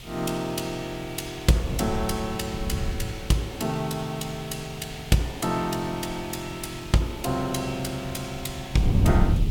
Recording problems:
background hiss; SNR 14 dB
wind noise; below 150 Hz, SNR 1 dB

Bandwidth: 17 kHz